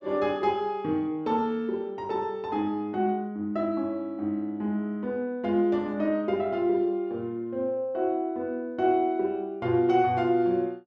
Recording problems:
none

